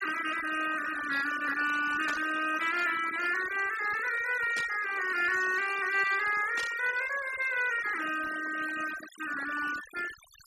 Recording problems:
denoising artefacts; signal-to-artefact ratio 12 dB
burst of static; at 2 s, at 4.5 s and at 6.5 s; peak -6 dB vs average level

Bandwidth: 14.5 kHz